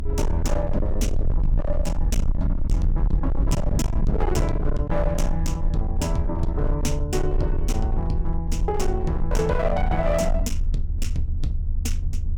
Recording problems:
distortion; hard clipping, uneven, signal-to-distortion ratio 6 dB
rumble; below 66 Hz, SNR 0 dB
wind on the microphone; below 130 Hz, SNR 6 dB

